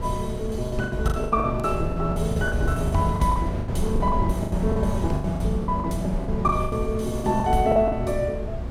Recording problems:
mains hum; 60 Hz, harmonics up to 1.3 kHz, SNR 17 dB
wind noise; below 120 Hz, SNR 5 dB
lost packets; 17% of the sound replaced, filled with the last packet

